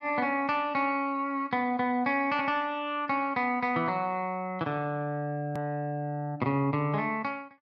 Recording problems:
click at an edit; at 5.5 s

